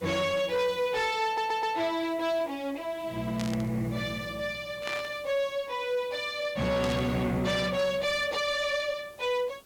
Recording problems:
distorted audio; soft clipping, signal-to-distortion ratio 10 dB
background hiss; SNR 24 dB
stutter; at 1.5 s
static burst; at 3.5 s, at 5 s and at 7 s; peak -3 dB vs average level

